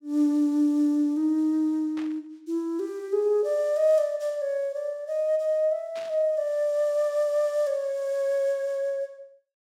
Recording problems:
static burst; at 2 s and at 6 s; peak -14 dB vs average level

